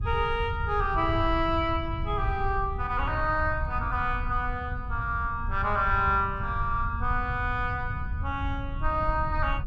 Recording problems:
rumble; below 94 Hz, SNR 5 dB

